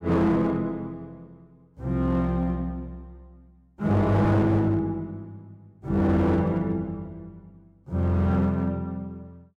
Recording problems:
distortion; hard clipping, signal-to-distortion ratio 11 dB

